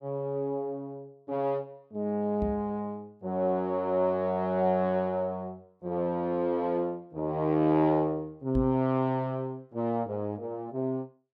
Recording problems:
knock on the microphone; at 2.5 s and at 8.5 s; peak +1 dB vs average level

